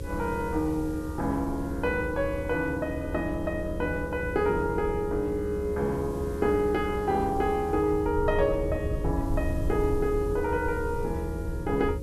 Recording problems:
electrical hum; 60 Hz, harmonics up to 540 Hz, SNR 12 dB
hiss; slope 0 dB per octave, SNR 25 dB
rumble; below 92 Hz, SNR 8 dB

